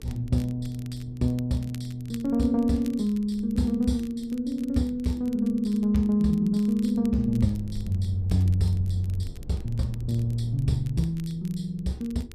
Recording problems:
hum; 50 Hz, harmonics up to 500 Hz, SNR 27 dB
rumble; below 100 Hz, SNR 18 dB
crackling; vinyl, SNR 27 dB

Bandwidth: 14.5 kHz